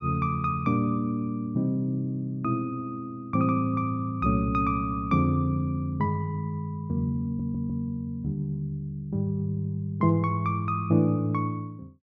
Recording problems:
audio stuttering; at 7.5 s

